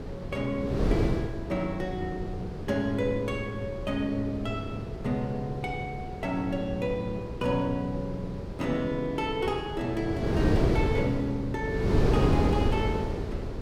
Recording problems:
wind noise; below 410 Hz, SNR 1 dB

